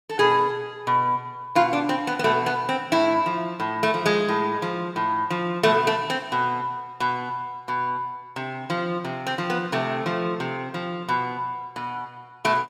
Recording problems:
none

